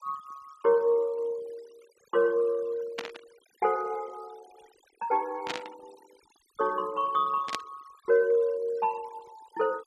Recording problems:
denoising artefacts; signal-to-artefact ratio 25 dB
static burst; at 3 s, at 5.5 s and at 7.5 s; peak 0 dB vs average level

